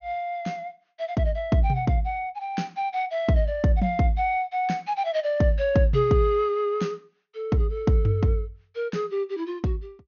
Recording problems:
treble cut off; nothing above 6.7 kHz

